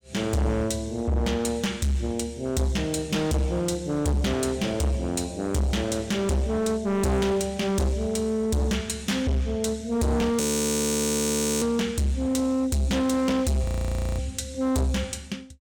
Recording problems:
distortion; hard clipping, signal-to-distortion ratio 6 dB
audio freezing; at 10 s for 1 s and at 14 s for 0.5 s

